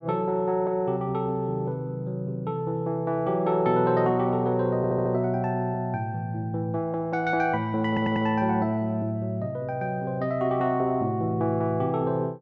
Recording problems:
audio stuttering; at 5 s and at 8 s

